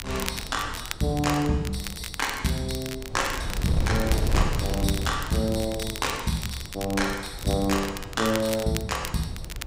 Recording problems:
wind on the microphone; below 140 Hz, SNR 7 dB
crackle; vinyl, SNR 9 dB

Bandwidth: 15.5 kHz